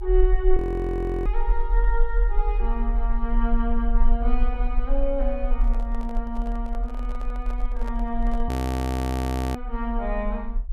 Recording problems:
rumble; below 40 Hz, SNR -3 dB
audio freezing; at 0.5 s for 0.5 s and at 8.5 s for 1 s
handling noise; from 5.5 to 8.5 s; peak -6 dB vs average level

